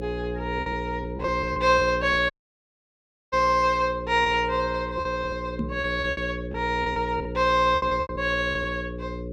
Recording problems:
electrical hum; 60 Hz, harmonics up to 540 Hz, SNR 9 dB
lost packets; 10% of the sound replaced, filled with repeated pitch periods
dropout; at 2.5 s for 1 s
microphone thump; at 5.5 s; peak 0 dB vs average level

